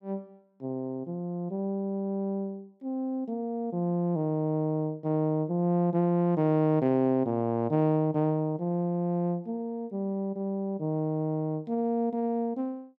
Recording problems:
none

